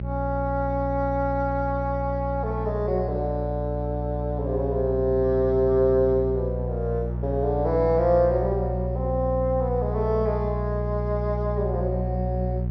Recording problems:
treble cut off; nothing above 5.8 kHz
hum; 60 Hz, harmonics up to 420 Hz, SNR 4 dB

